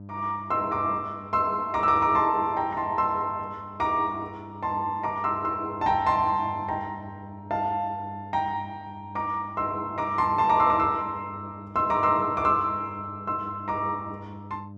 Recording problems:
mains hum; 50 Hz, harmonics up to 700 Hz, SNR 18 dB

